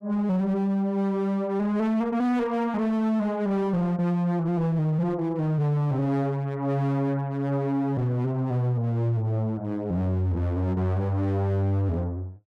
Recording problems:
distortion; hard clipping, signal-to-distortion ratio 10 dB

